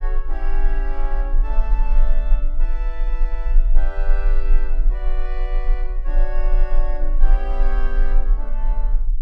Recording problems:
low-frequency rumble; below 32 Hz, strongest tone 20 Hz, SNR -12 dB

